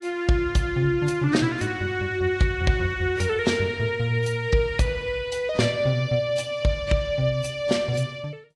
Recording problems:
lossy compression; AAC, log-spectral distance 2 dB, nothing above 11 kHz

